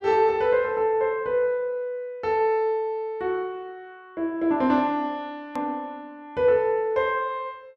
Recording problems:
click at an edit; at 5.5 s

